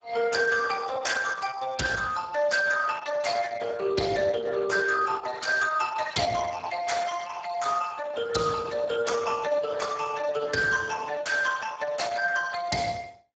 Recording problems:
lossy compression; Opus, then Speex, log-spectral distance 5 dB, nothing above 7.6 kHz

